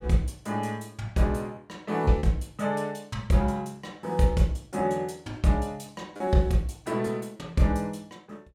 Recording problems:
packet loss; 2% of the sound replaced, filled with repeated pitch periods

